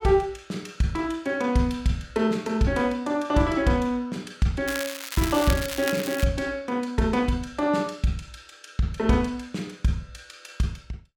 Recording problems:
crackle; from 4.5 to 6 s; loose cable, SNR 7 dB

